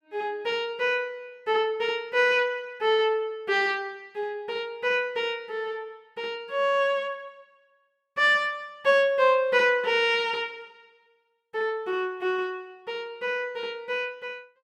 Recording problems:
none

